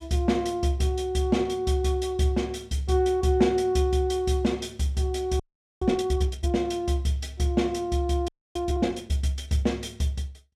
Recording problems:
audio freezing; at 5.5 s and at 8.5 s

